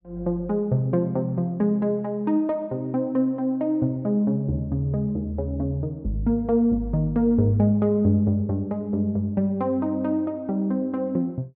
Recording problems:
none

